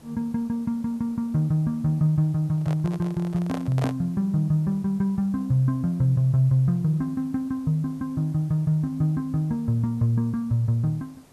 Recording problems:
background hiss; SNR 28 dB
microphone handling noise; from 2.5 to 4 s; peak -3 dB vs average level

